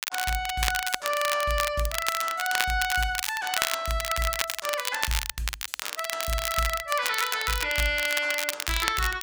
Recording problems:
crackle; vinyl, SNR 3 dB

